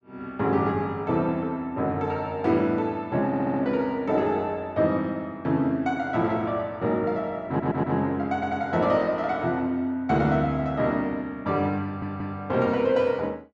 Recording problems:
stutter; 4 times, first at 3.5 s

